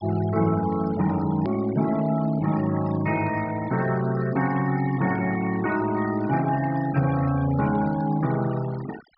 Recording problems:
treble cut off; nothing above 5.5 kHz
denoising artefacts; signal-to-artefact ratio 16 dB
hard cut with a click; at 1.5 s

